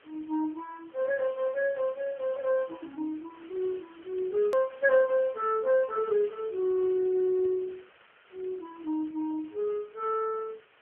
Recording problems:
telephone audio; 320 Hz to 2.2 kHz, AMR-NB
hiss; SNR 27 dB
hard cut with a click; at 4.5 s

